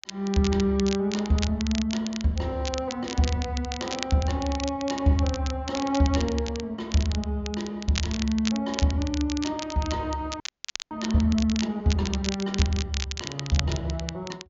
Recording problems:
treble cut off; nothing above 7.2 kHz
crackling; vinyl, SNR 9 dB
frozen audio; at 10 s for 0.5 s

